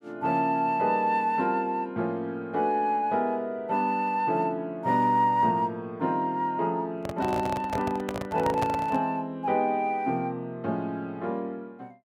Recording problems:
handling noise; from 7 to 9 s; peak 0 dB vs average level

